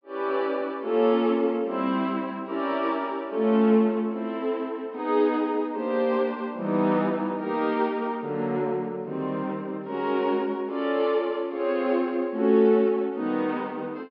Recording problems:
treble missing; nothing above 5.5 kHz

